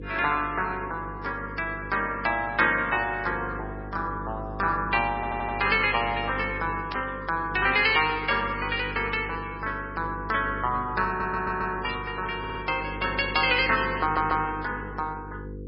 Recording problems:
codec artefacts; MP3, log-spectral distance 3 dB, nothing above 4.9 kHz
hum; 50 Hz, harmonics up to 500 Hz, SNR 13 dB
audio stuttering; 4 times, first at 5 s
burst of static; at 7 s and at 12 s; peak -6 dB vs average level

